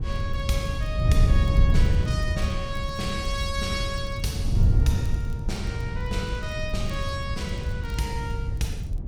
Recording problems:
wind noise; below 110 Hz, SNR -5 dB
crackling; vinyl, SNR 26 dB

